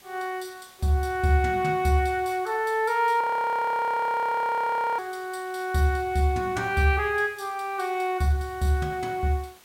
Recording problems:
hiss; slope -1 dB per octave, SNR 26 dB
audio freezing; at 3 s for 2 s

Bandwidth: 16 kHz